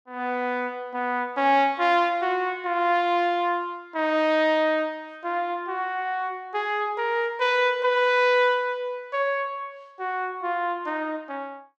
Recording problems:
none

